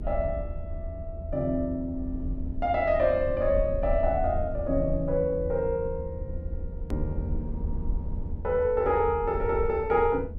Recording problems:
low-frequency rumble; below 80 Hz, SNR 8 dB
edit click; at 7 s

